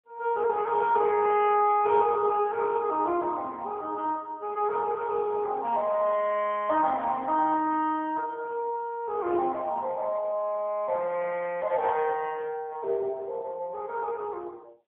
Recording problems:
phone line; 280 Hz to 3.3 kHz, AMR-NB

